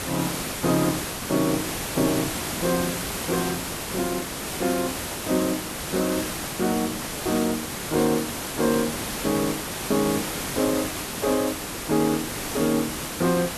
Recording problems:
hiss; slope -3 dB per octave, SNR 3 dB

